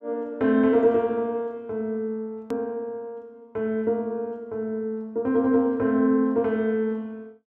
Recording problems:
hard cut with a click; at 2.5 s

